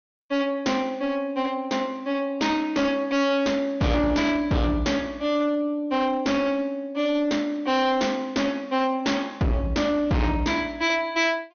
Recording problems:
low-pass filter; nothing above 6.4 kHz
distortion; hard clipping, signal-to-distortion ratio 8 dB

